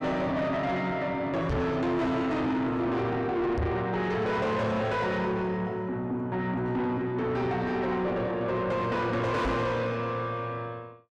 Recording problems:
distorted audio; soft clipping, signal-to-distortion ratio 6 dB
microphone thump; at 1.5 s, at 3.5 s and at 9.5 s; peak +4 dB vs average level

